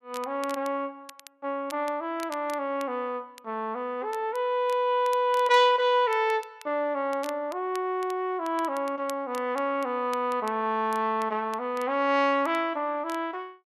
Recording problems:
crackle; vinyl, SNR 22 dB

